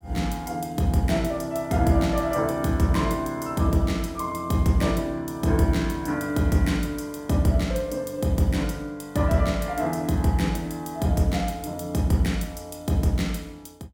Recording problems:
none

